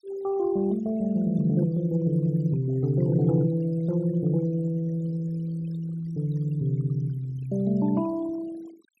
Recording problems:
noise reduction artefacts; signal-to-artefact ratio 23 dB

